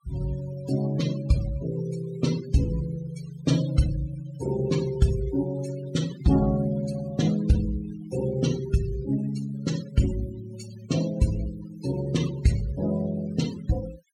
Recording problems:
noise reduction artefacts; signal-to-artefact ratio 14 dB

